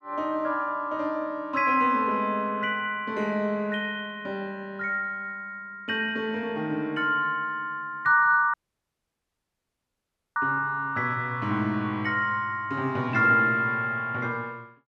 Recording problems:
dropout; at 8.5 s for 2 s

